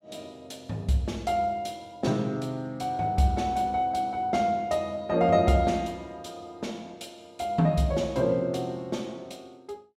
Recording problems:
none

